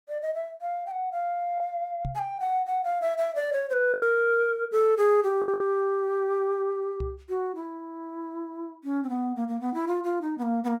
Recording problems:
packet loss; 2% of the sound replaced, filled with the last packet
microphone thump; at 2 s and at 7 s; peak -3 dB vs average level

